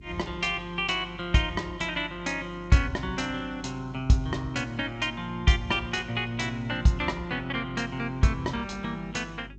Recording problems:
codec artefacts; G.722, log-spectral distance 2 dB
mains hum; 50 Hz, harmonics up to 400 Hz, SNR 19 dB

